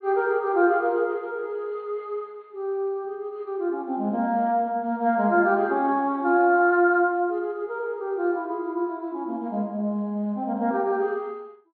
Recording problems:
treble missing; nothing above 4.4 kHz

